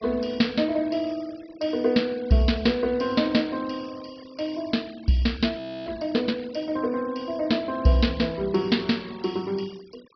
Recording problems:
treble cut off; nothing above 5.5 kHz
noise reduction artefacts; signal-to-artefact ratio 23 dB
frozen audio; at 5.5 s

